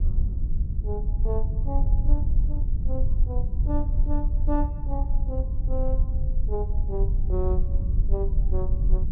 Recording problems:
low-frequency rumble; below 60 Hz, SNR -8 dB

